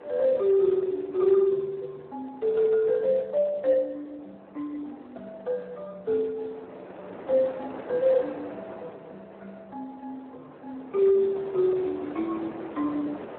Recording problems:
telephone audio; 280 Hz to 2.2 kHz, Speex
wind on the microphone; below 870 Hz, SNR 18 dB

